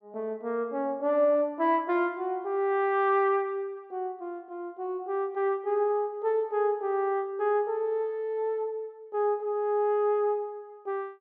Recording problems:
none

